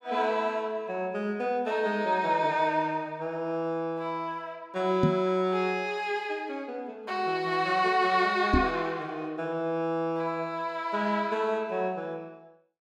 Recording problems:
microphone thump; at 5 s and at 8.5 s; peak +7 dB vs average level

